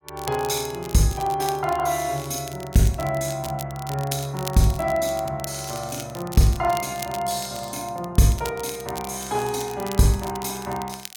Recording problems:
crackling; vinyl, SNR 14 dB

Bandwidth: 17 kHz